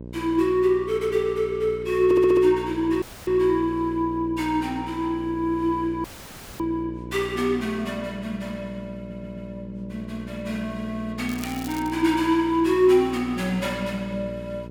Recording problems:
hum; 60 Hz, harmonics up to 660 Hz, SNR 14 dB
stutter; at 2 s and at 9 s
dropout; at 3 s and at 6 s for 0.5 s
crackle; at 11 s; loose cable, SNR 17 dB

